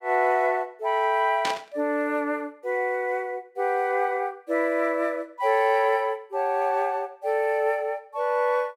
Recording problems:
burst of static; at 1.5 s; peak 0 dB vs average level

